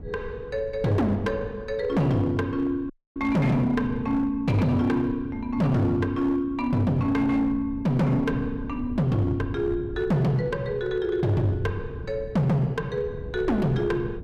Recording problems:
distortion; hard clipping, uneven, signal-to-distortion ratio 10 dB
wind on the microphone; below 140 Hz, SNR 15 dB
audio cutting out; at 3 s

